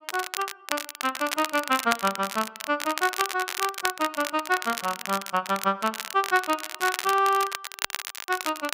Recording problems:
crackle; vinyl, SNR 6 dB

